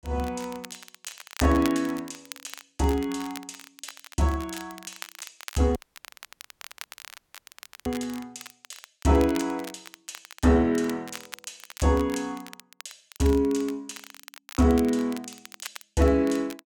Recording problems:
crackle; vinyl, SNR 17 dB
audio cutting out; at 6 s for 2 s

